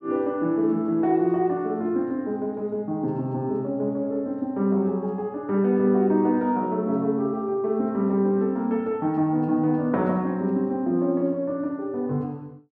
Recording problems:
none

